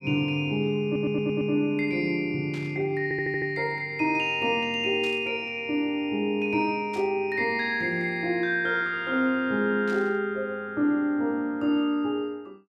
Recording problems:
stutter; at 1 s and at 3 s
burst of static; 4 times, first at 2.5 s; peak -13 dB vs average level

